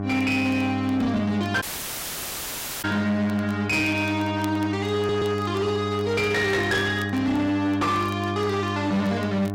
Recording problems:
distortion; hard clipping, uneven, signal-to-distortion ratio 11 dB
mains hum; 50 Hz, harmonics up to 1.5 kHz, SNR 6 dB
crackle; vinyl, SNR 27 dB
dropout; at 1.5 s for 1 s
stutter; at 5 s

